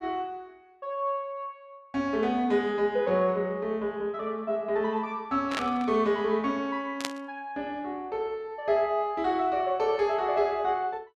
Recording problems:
burst of static; at 5.5 s and at 7 s; peak +2 dB vs average level

